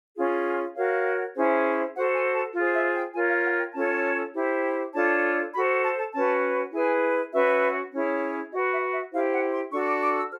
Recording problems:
none

